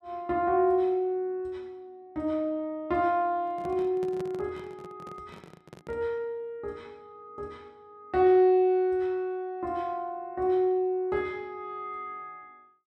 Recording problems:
microphone handling noise; from 3.5 to 6 s; peak -8 dB vs average level

